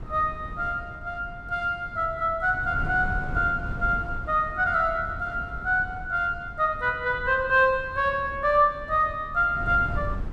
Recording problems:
wind on the microphone; below 150 Hz, SNR 13 dB

